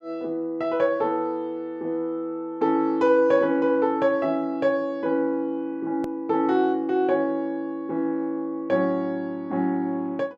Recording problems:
hard cut with a click; at 6 s

